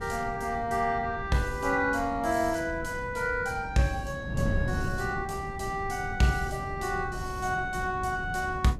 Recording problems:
wind noise; below 200 Hz, SNR 8 dB

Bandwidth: 14.5 kHz